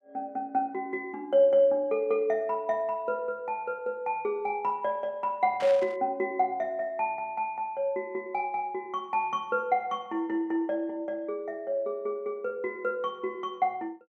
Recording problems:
burst of static; at 5.5 s; peak -7 dB vs average level

